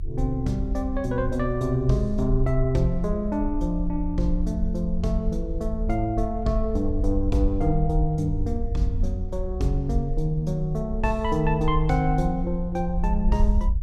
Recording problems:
rumble; below 56 Hz, SNR 5 dB

